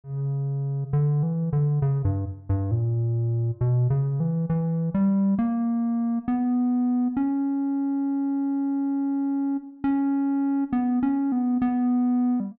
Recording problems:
none

